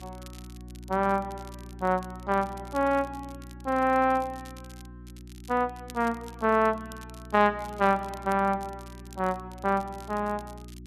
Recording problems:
mains hum; 60 Hz, harmonics up to 360 Hz, SNR 17 dB
crackle; vinyl, SNR 25 dB

